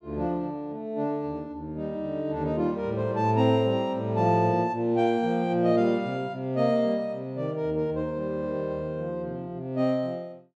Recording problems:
none

